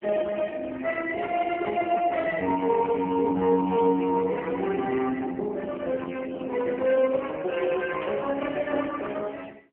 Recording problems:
phone line; 220 Hz to 2.7 kHz, AMR-NB
static burst; at 8 s; peak -5 dB vs average level

